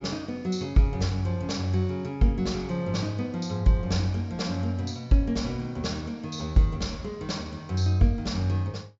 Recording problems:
treble cut off; nothing above 8 kHz

